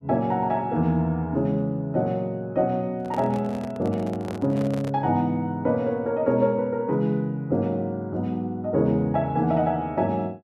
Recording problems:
microphone handling noise; from 3 to 5 s; peak -7 dB vs average level

